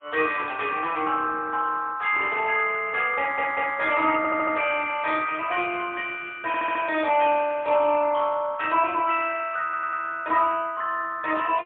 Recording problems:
phone line; 320 Hz to 3.5 kHz, AMR-NB, then MP3
stutter; 4 times, first at 3 s

